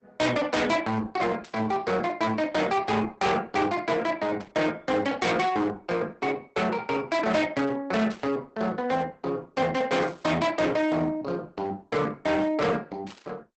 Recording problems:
lossy compression; Opus, log-spectral distance 3 dB, nothing above 8 kHz
distorted audio; hard clipping, uneven, signal-to-distortion ratio 7 dB
static burst; 5 times, first at 1.5 s; peak -14 dB vs average level

